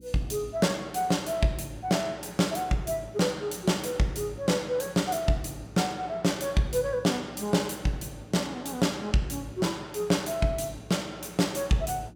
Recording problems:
electrical hum; 60 Hz, harmonics up to 360 Hz, SNR 25 dB

